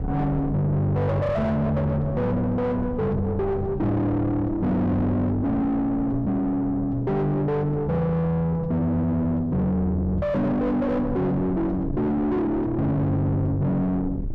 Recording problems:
distorted audio; soft clipping, signal-to-distortion ratio 6 dB
rumble; below 300 Hz, SNR 11 dB

